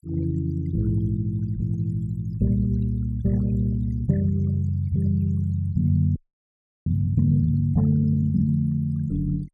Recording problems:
denoising artefacts; signal-to-artefact ratio 25 dB
audio freezing; at 6 s for 0.5 s

